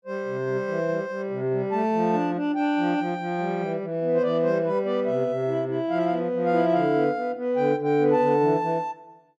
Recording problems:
none

